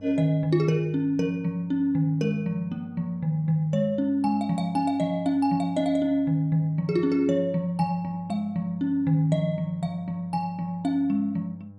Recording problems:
hum; 50 Hz, harmonics up to 800 Hz, SNR 23 dB

